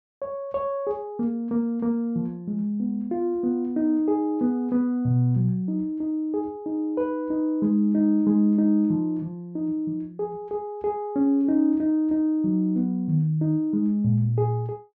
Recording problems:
none

